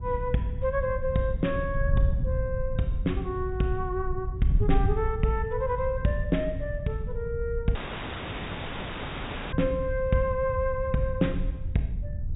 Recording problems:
low-pass filter; nothing above 4 kHz
wind noise; below 82 Hz, SNR 3 dB
audio cutting out; at 8 s for 2 s

